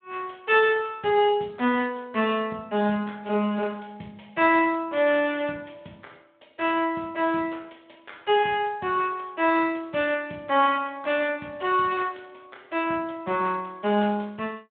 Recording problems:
telephone audio; 150 Hz to 3.6 kHz, Speex

